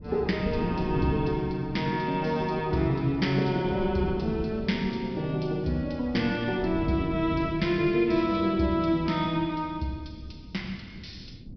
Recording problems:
treble missing; nothing above 5.5 kHz
wind noise; below 220 Hz, SNR 13 dB

